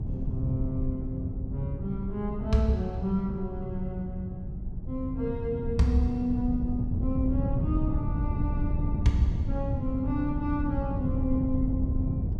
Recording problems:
wind noise; below 140 Hz, SNR 1 dB

